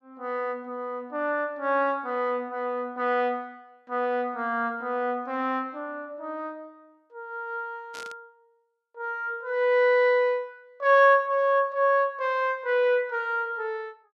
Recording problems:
burst of static; at 8 s; peak -12 dB vs average level

